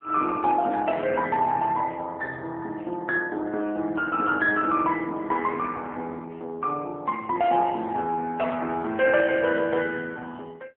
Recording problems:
phone line; 240 Hz to 3 kHz, AMR-NB

